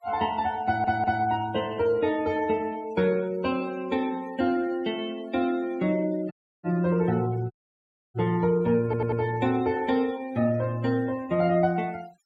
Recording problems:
noise reduction artefacts; signal-to-artefact ratio 23 dB
audio stuttering; at 0.5 s and at 9 s
dropout; at 6.5 s and at 7.5 s for 0.5 s

